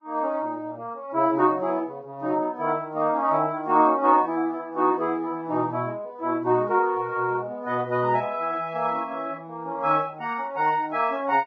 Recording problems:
codec artefacts; Vorbis, log-spectral distance 2 dB

